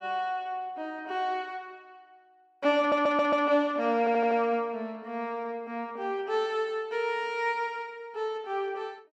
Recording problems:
stutter; at 3 s and at 4 s

